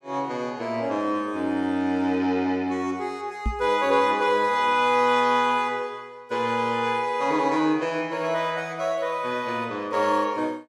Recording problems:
knock on the microphone; at 3.5 s; peak +1 dB vs average level

